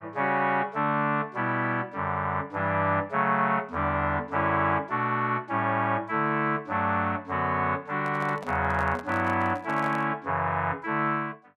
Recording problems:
handling noise; from 8 to 10 s; peak -9 dB vs average level

